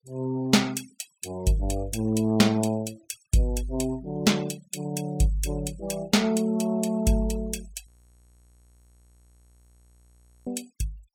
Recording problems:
noise reduction artefacts; signal-to-artefact ratio 24 dB
frozen audio; at 8 s for 2.5 s

